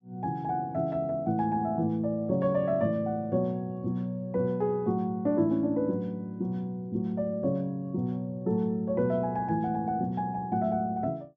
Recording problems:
none

